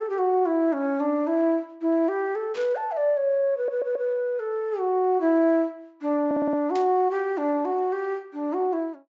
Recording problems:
low-pass filter; nothing above 8 kHz
static burst; at 2.5 s and at 7 s; peak -12 dB vs average level
audio stuttering; at 3.5 s and at 6.5 s

